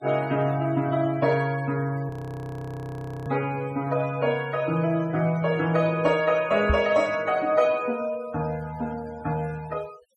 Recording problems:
noise reduction artefacts; signal-to-artefact ratio 21 dB
audio freezing; at 2 s for 1 s
microphone thump; at 6.5 s; peak +4 dB vs average level

